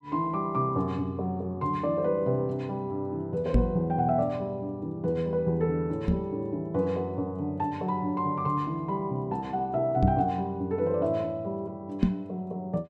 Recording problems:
knock on the microphone; 4 times, first at 3.5 s; peak +9 dB vs average level

